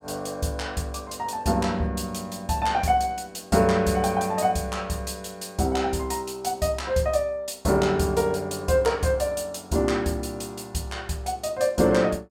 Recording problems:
none

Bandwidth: 17.5 kHz